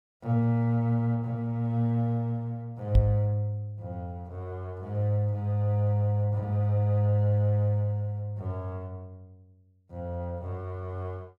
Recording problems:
microphone thump; at 3 s; peak +9 dB vs average level

